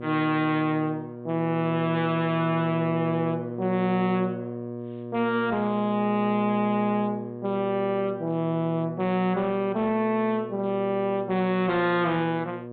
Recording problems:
low-pass filter; nothing above 4 kHz
distorted audio; hard clipping, uneven, signal-to-distortion ratio 6 dB
hum; 60 Hz, harmonics up to 1.1 kHz, SNR 11 dB

